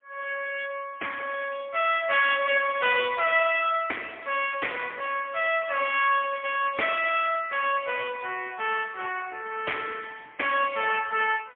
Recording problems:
telephone audio; 340 Hz to 3.4 kHz, AMR-NB, then MP3

